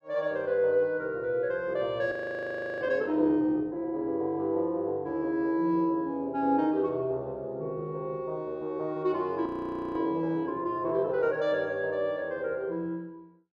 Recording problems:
audio freezing; at 2 s for 0.5 s and at 9.5 s

